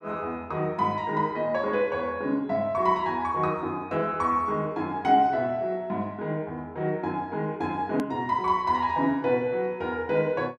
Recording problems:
hard cut with a click; at 8 s

